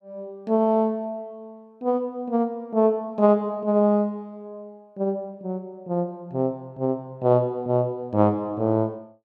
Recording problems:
none

